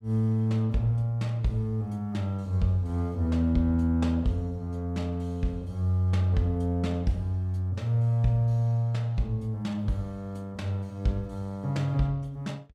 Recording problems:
none

